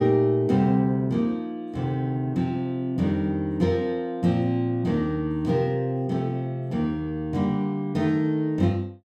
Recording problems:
none

